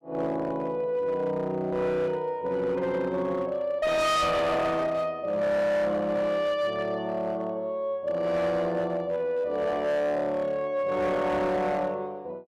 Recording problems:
distorted audio; hard clipping, signal-to-distortion ratio 8 dB

